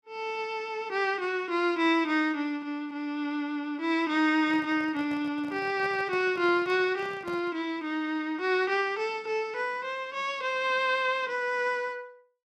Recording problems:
handling noise; from 4.5 to 7.5 s; peak -10 dB vs average level

